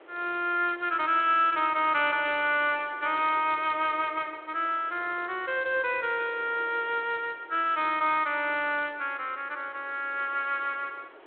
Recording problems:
telephone audio; 300 Hz to 3.7 kHz, G.726
wind noise; below 1.5 kHz, SNR 23 dB

